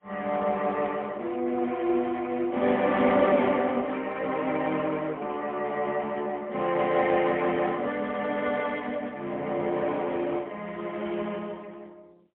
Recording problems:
phone line; 260 Hz to 3.5 kHz, AMR-NB, then MP3

